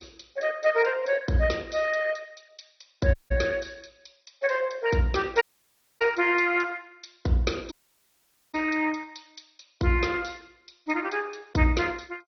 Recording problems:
codec artefacts; MP2, log-spectral distance 6 dB, nothing above 6 kHz
audio cutting out; at 3 s, at 5.5 s for 0.5 s and at 7.5 s for 1 s

